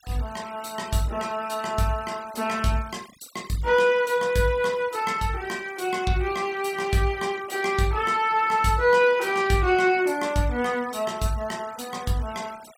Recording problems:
denoising artefacts; signal-to-artefact ratio 22 dB

